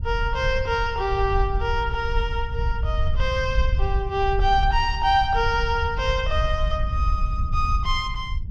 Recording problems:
wind on the microphone; below 70 Hz, SNR 3 dB

